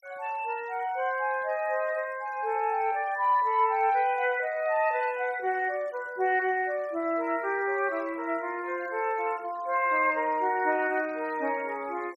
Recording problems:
noise reduction artefacts; signal-to-artefact ratio 26 dB

